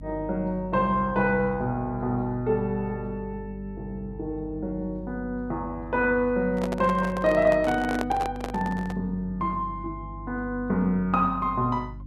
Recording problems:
hum; 50 Hz, harmonics up to 300 Hz, SNR 15 dB
microphone handling noise; from 6.5 to 9 s; peak -1 dB vs average level

